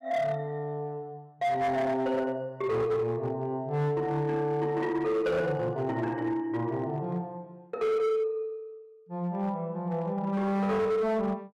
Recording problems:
distortion; hard clipping, signal-to-distortion ratio 11 dB

